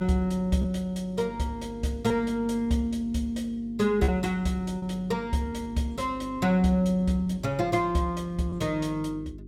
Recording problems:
electrical hum; 50 Hz, harmonics up to 400 Hz, SNR 17 dB
packet loss; 3% of the sound replaced, filled with repeated pitch periods

